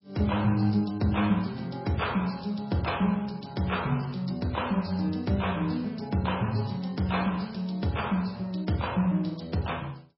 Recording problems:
lossy compression; MP3, log-spectral distance 5 dB, nothing above 5.5 kHz

